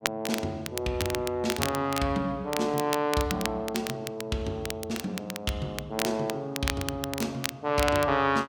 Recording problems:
crackle; vinyl, SNR 7 dB

